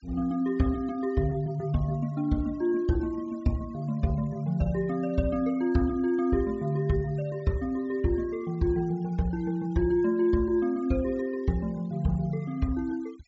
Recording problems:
treble cut off; nothing above 8 kHz
noise reduction artefacts; signal-to-artefact ratio 26 dB

